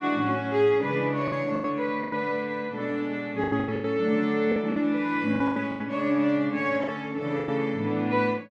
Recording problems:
lost packets; 10% of the sound replaced, filled with the last packet

